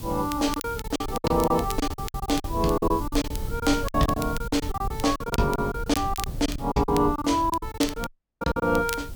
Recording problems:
background hiss; slope +6 dB per octave, SNR 19 dB
rumble; below 110 Hz, SNR 10 dB
crackling; vinyl, SNR 14 dB
lost packets; 17% of the sound replaced, filled with silence
audio cutting out; at 8 s

